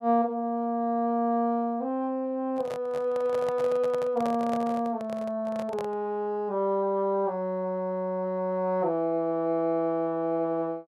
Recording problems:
microphone handling noise; from 2.5 to 6 s; peak -4 dB vs average level

